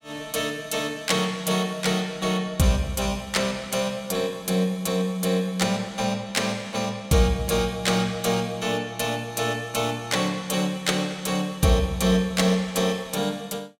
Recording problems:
none

